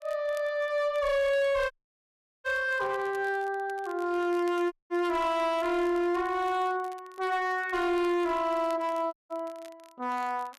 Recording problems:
distorted audio; hard clipping, uneven, signal-to-distortion ratio 10 dB
crackle; vinyl, SNR 27 dB
audio cutting out; at 1.5 s for 0.5 s, at 4.5 s and at 9 s

